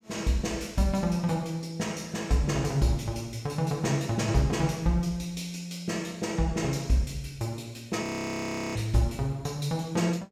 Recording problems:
frozen audio; at 8 s for 0.5 s

